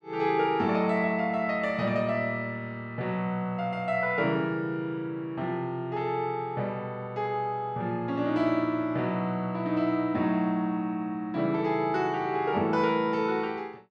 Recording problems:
none

